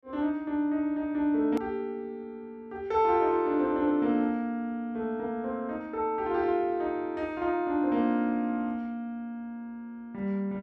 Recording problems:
edit click; at 1.5 s

